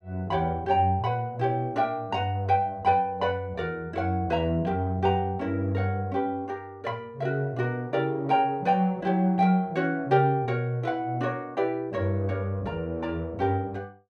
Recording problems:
none

